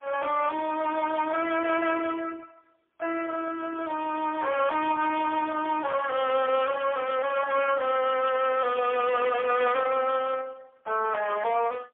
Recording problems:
telephone audio; 370 Hz to 3.2 kHz, AMR-NB, then MP3
distorted audio; soft clipping, signal-to-distortion ratio 9 dB

